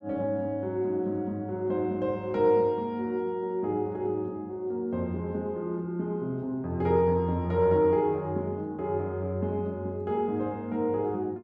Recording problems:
none

